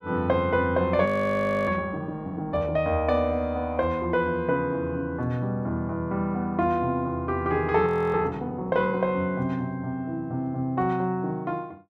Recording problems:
audio freezing; at 1 s for 0.5 s and at 8 s

